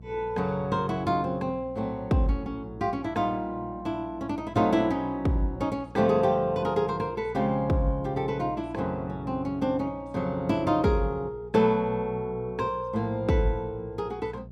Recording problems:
electrical hum; 60 Hz, harmonics up to 480 Hz, SNR 18 dB

